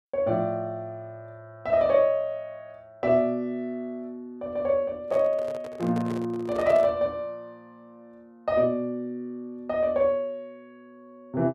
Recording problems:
handling noise; from 5 to 7 s; peak -5 dB vs average level

